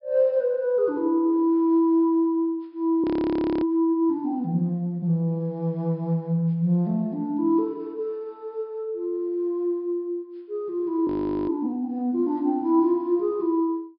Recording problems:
treble missing; nothing above 5.5 kHz
audio freezing; at 3 s for 0.5 s and at 11 s

